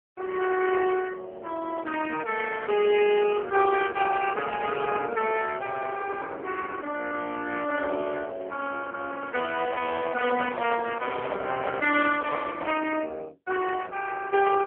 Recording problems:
telephone audio; 240 Hz to 3.1 kHz, AMR-NB
handling noise; from 9.5 to 13 s; peak -4 dB vs average level

